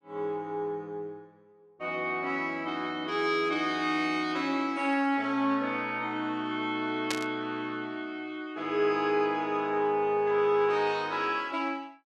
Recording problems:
burst of static; at 7 s; peak +2 dB vs average level

